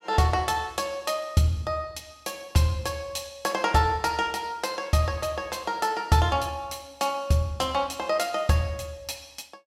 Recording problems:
none

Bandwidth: 16 kHz